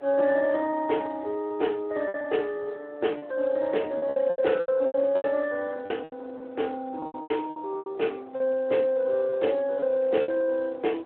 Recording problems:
phone line; 280 Hz to 3.1 kHz, Speex
wind noise; below 810 Hz, SNR 21 dB
lost packets; 11% of the sound replaced, filled with repeated pitch periods

